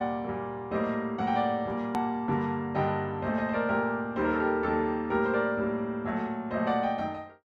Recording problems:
edit click; at 2 s

